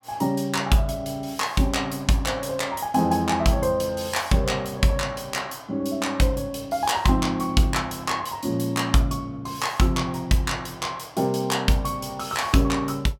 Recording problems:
none

